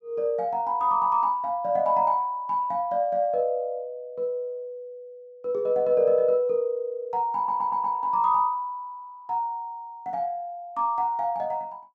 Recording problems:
stutter; at 7.5 s

